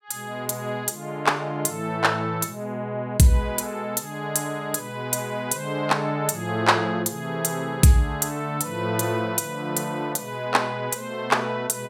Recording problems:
none

